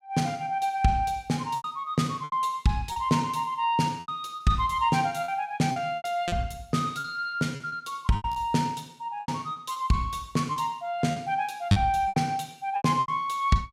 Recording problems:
packet loss; 9% of the sound replaced, filled with repeated pitch periods

